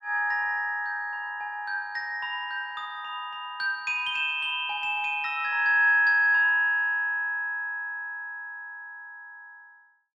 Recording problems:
none

